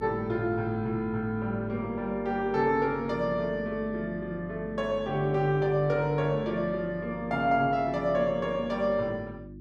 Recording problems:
hum; 50 Hz, harmonics up to 350 Hz, SNR 15 dB

